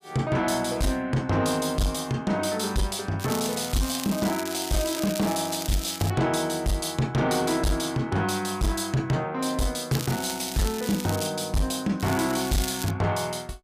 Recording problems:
distorted audio; soft clipping, signal-to-distortion ratio 10 dB
crackling; from 3 to 6 s, from 10 to 11 s and at 12 s; loose cable, SNR 9 dB

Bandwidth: 15 kHz